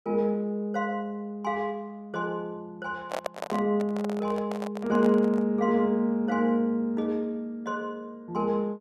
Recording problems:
microphone handling noise; from 3 to 5.5 s; peak +1 dB vs average level

